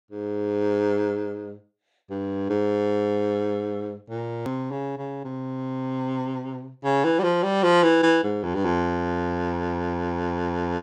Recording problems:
click at an edit; at 4.5 s

